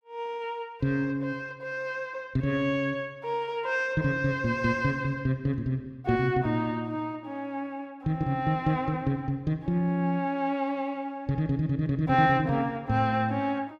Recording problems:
none

